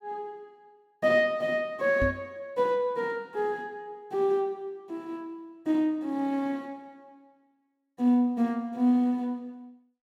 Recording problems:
microphone bump; at 2 s; peak +1 dB vs average level

